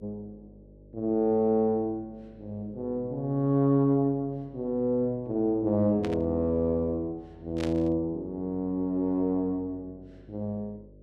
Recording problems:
mains hum; 50 Hz, harmonics up to 600 Hz, SNR 25 dB
burst of static; at 6 s and at 7.5 s; peak -7 dB vs average level

